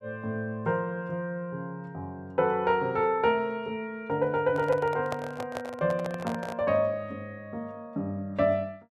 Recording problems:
microphone handling noise; from 4.5 to 6.5 s; peak -1 dB vs average level

